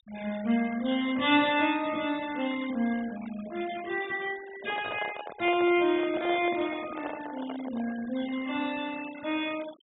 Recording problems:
treble cut off; nothing above 4 kHz
noise reduction artefacts; signal-to-artefact ratio 17 dB
microphone handling noise; from 4.5 to 8 s; peak -4 dB vs average level

